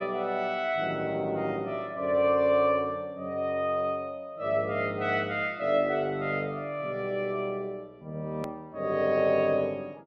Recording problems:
edit click; at 8.5 s

